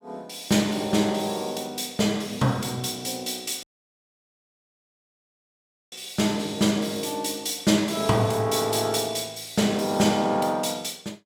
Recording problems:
audio cutting out; at 3.5 s for 2.5 s

